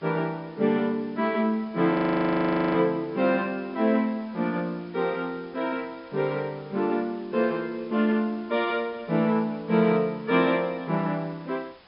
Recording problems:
low-pass filter; nothing above 5.5 kHz
background hiss; SNR 27 dB
audio freezing; at 2 s for 1 s

